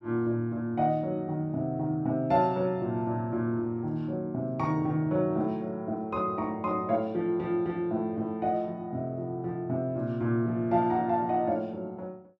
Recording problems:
none

